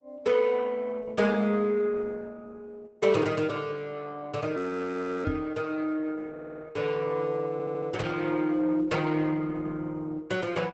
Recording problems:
lossy compression; Opus, log-spectral distance 3 dB, nothing above 8 kHz
frozen audio; at 4.5 s for 0.5 s
knock on the microphone; at 5.5 s; peak +2 dB vs average level
audio stuttering; at 6.5 s and at 7.5 s

